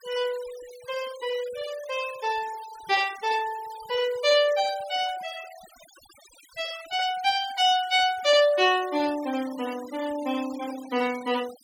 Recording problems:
denoising artefacts; signal-to-artefact ratio 18 dB

